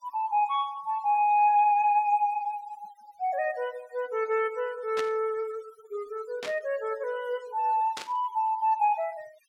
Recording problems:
denoising artefacts; signal-to-artefact ratio 25 dB
static burst; at 5 s, at 6.5 s and at 8 s; peak -5 dB vs average level

